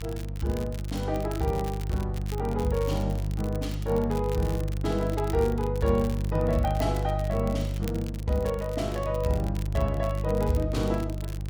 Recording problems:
hum; 50 Hz, harmonics up to 500 Hz, SNR 2 dB
crackle; vinyl, SNR 17 dB

